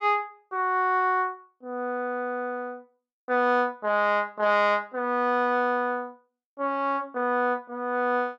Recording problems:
none

